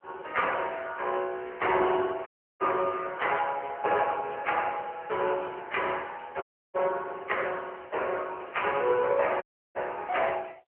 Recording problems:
telephone audio; 340 Hz to 3.1 kHz, AMR-NB
dropout; at 2.5 s, at 6.5 s and at 9.5 s

